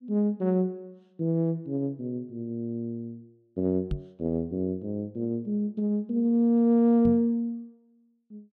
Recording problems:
microphone bump; at 4 s and at 7 s; peak -1 dB vs average level

